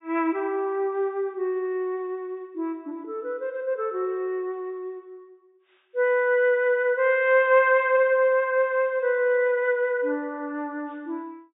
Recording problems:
low-pass filter; nothing above 4 kHz

